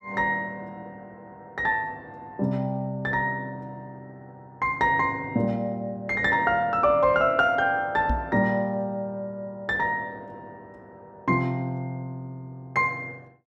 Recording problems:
knock on the microphone; at 8 s; peak +1 dB vs average level

